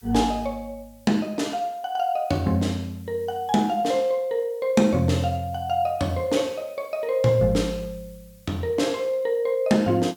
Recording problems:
hiss; slope +2 dB per octave, SNR 29 dB

